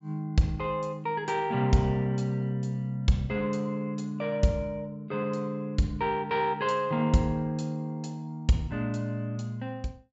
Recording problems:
treble missing; nothing above 7.6 kHz

